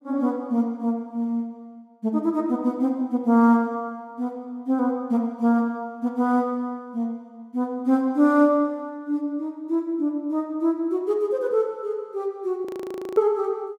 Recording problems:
frozen audio; at 13 s for 0.5 s

